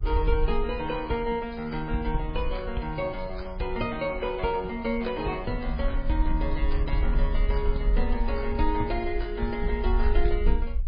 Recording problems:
codec artefacts; MP3, log-spectral distance 2 dB, nothing above 4.2 kHz
low-frequency rumble; below 50 Hz, SNR 1 dB

